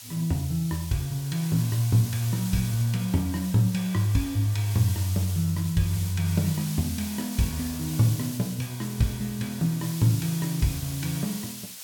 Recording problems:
hiss; slope +4 dB per octave, SNR 11 dB

